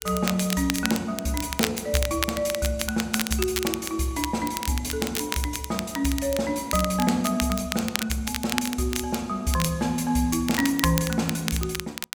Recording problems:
crackle; vinyl, SNR 5 dB

